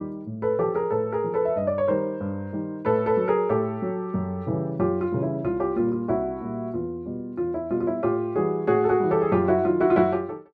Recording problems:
none

